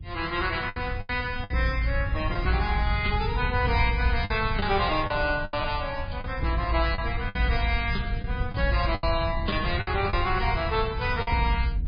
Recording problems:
lossy codec; Vorbis, then MP3, log-spectral distance 4 dB
wind noise; below 100 Hz, SNR 6 dB
packet loss; 7% of the sound replaced, filled with the last packet

